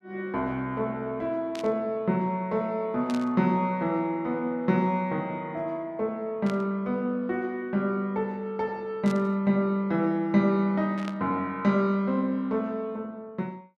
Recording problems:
static burst; 5 times, first at 1.5 s; peak -9 dB vs average level

